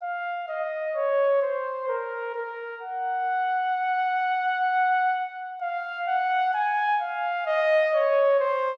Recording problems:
none

